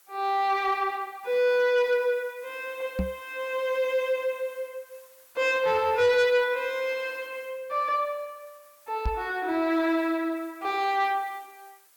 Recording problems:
distortion; soft clipping, signal-to-distortion ratio 11 dB
background hiss; slope 0 dB per octave, SNR 27 dB
microphone thump; at 3 s and at 9 s; peak +1 dB vs average level

